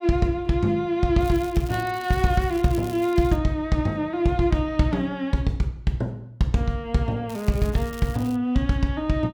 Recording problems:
crackle; from 1 to 3.5 s and from 7.5 to 8.5 s; loose cable, SNR 21 dB

